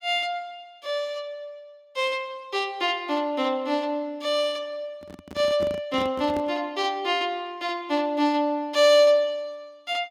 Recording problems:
handling noise; from 5 to 6.5 s; peak -5 dB vs average level

